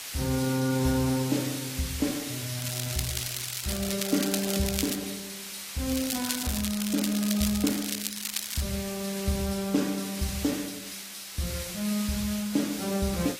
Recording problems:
lossy compression; AAC, log-spectral distance 9 dB, nothing above 14.7 kHz
background hiss; slope +2 dB per octave, SNR 6 dB
crackling; from 2.5 to 5 s and from 6 to 8.5 s; loose cable, SNR 3 dB

